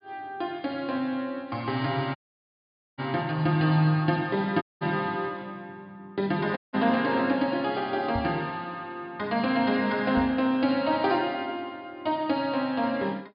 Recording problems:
treble missing; nothing above 4.9 kHz
dropout; at 2 s for 1 s, at 4.5 s and at 6.5 s
microphone bump; at 8 s and at 10 s; peak -3 dB vs average level

